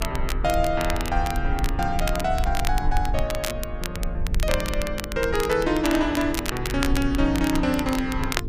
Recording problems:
mains hum; 50 Hz, harmonics up to 450 Hz, SNR 13 dB
rumble; below 56 Hz, SNR 6 dB
crackling; vinyl, SNR 9 dB

